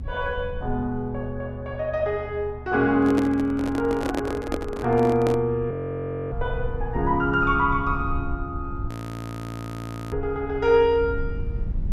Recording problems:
low-frequency rumble; below 100 Hz, SNR 11 dB
microphone handling noise; from 3 to 5.5 s; peak +1 dB vs average level
frozen audio; at 5.5 s for 0.5 s and at 9 s for 1 s

